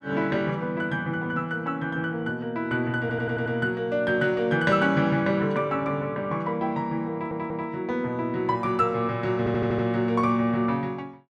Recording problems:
audio stuttering; at 3 s, at 7 s and at 9.5 s

